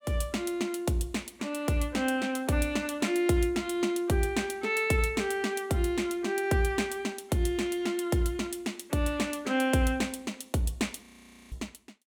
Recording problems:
audio freezing; at 11 s

